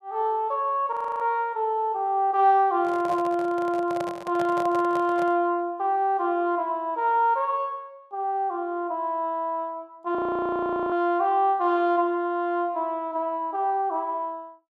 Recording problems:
frozen audio; at 1 s and at 10 s for 1 s
handling noise; from 3 to 5.5 s; peak -5 dB vs average level

